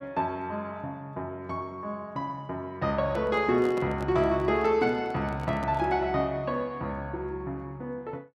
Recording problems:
handling noise; from 3 to 6 s; peak -5 dB vs average level

